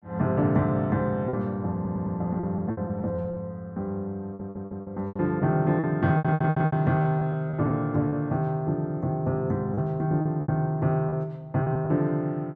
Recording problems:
lost packets; 8% of the sound replaced, filled with repeated pitch periods
audio stuttering; at 2 s, at 4.5 s and at 6 s

